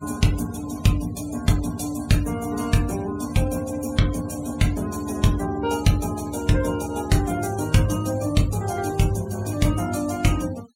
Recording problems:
denoising artefacts; signal-to-artefact ratio 16 dB

